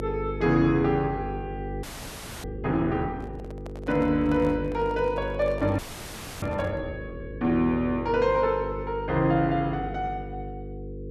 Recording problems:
electrical hum; 50 Hz, harmonics up to 500 Hz, SNR 10 dB
audio freezing; at 2 s for 0.5 s and at 6 s for 0.5 s
microphone handling noise; from 3 to 7 s; peak -10 dB vs average level

